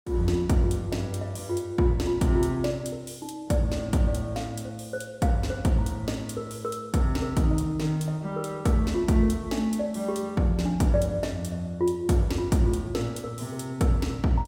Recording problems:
none

